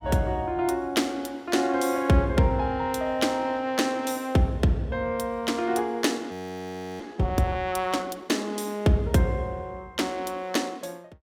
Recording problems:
frozen audio; at 6.5 s for 0.5 s

